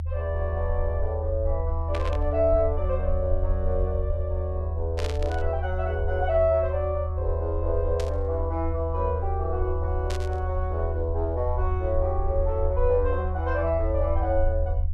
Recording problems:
low-frequency rumble; below 80 Hz, SNR 0 dB
burst of static; 4 times, first at 2 s; peak -4 dB vs average level

